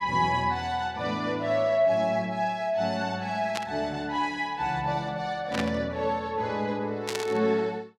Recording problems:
burst of static; at 3.5 s, at 5.5 s and at 7 s; peak 0 dB vs average level

